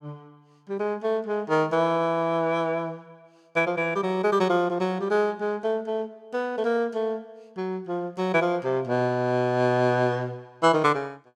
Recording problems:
none

